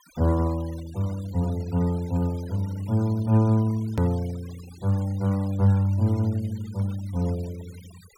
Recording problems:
noise reduction artefacts; signal-to-artefact ratio 23 dB
hard cut with a click; at 4 s

